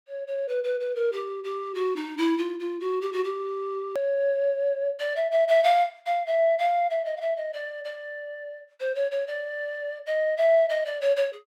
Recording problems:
hard cut with a click; at 4 s

